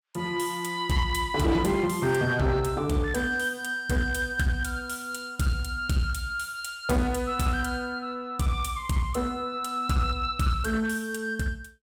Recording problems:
distortion; hard clipping, uneven, signal-to-distortion ratio 11 dB

